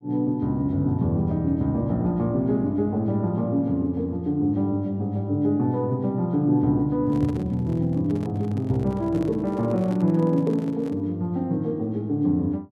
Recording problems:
handling noise; from 7 to 11 s; peak -10 dB vs average level

